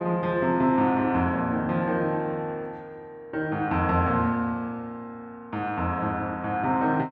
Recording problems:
none

